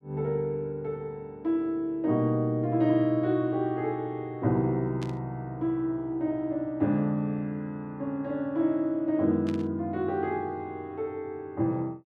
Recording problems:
burst of static; at 5 s and at 9.5 s; peak -10 dB vs average level

